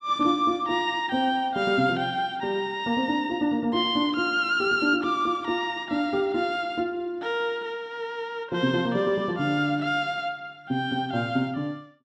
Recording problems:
none

